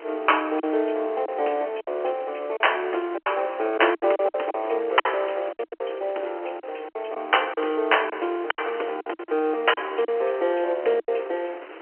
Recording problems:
telephone audio; 280 Hz to 3.1 kHz, G.711
wind noise; below 1.9 kHz, SNR 18 dB
lost packets; 10% of the sound replaced, filled with silence

